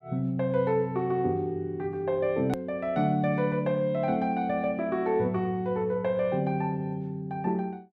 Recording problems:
hard cut with a click; at 2.5 s

